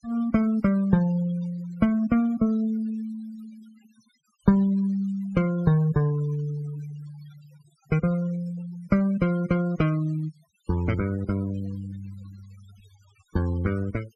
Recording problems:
noise reduction artefacts; signal-to-artefact ratio 22 dB

